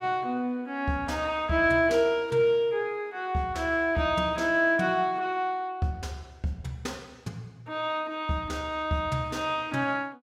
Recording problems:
none

